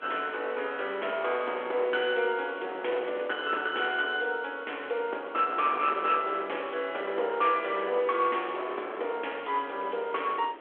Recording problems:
telephone audio; 320 Hz to 3.4 kHz, G.726
distortion; hard clipping, signal-to-distortion ratio 15 dB
hiss; SNR 27 dB
wind on the microphone; below 1.3 kHz, SNR 14 dB

